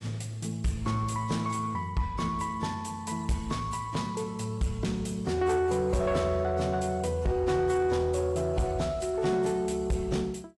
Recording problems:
lossy compression; AAC, log-spectral distance 2 dB, nothing above 11.3 kHz
distorted audio; soft clipping, signal-to-distortion ratio 11 dB

